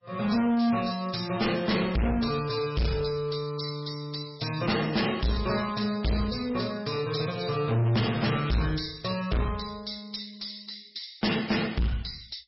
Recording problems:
codec artefacts; MP3, log-spectral distance 10 dB, nothing above 5.5 kHz
distorted audio; hard clipping, uneven, signal-to-distortion ratio 5 dB

